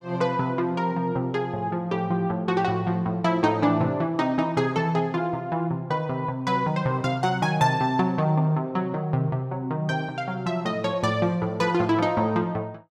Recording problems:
none

